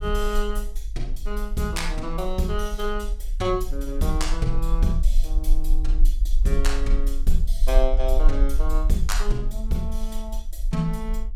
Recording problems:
rumble; below 38 Hz, strongest tone 24 Hz, SNR -2 dB

